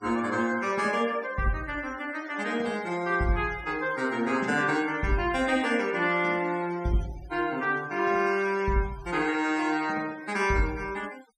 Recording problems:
noise reduction artefacts; signal-to-artefact ratio 20 dB

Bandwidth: 15.5 kHz